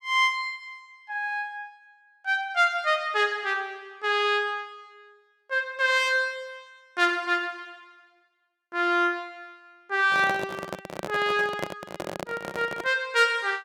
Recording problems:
microphone handling noise; from 10 to 13 s; peak -1 dB vs average level

